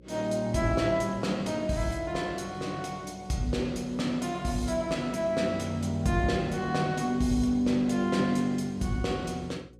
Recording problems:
hum; 60 Hz, harmonics up to 540 Hz, SNR 24 dB

